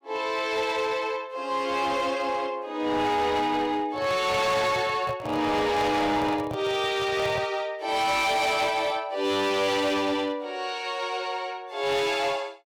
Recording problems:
distorted audio; hard clipping, signal-to-distortion ratio 10 dB
handling noise; from 4 to 7.5 s; peak -5 dB vs average level

